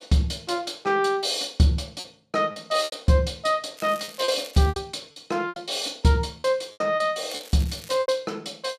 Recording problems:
packet loss; 8% of the sound replaced, filled with repeated pitch periods
crackle; at 4 s and at 7.5 s; loose cable, SNR 19 dB

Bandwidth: 14.5 kHz